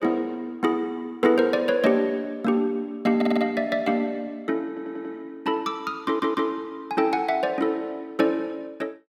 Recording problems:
stutter; at 3 s, at 4.5 s and at 6 s

